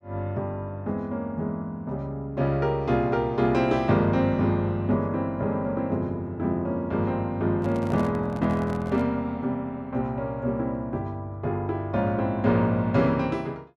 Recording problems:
microphone handling noise; from 7.5 to 9 s; peak -8 dB vs average level

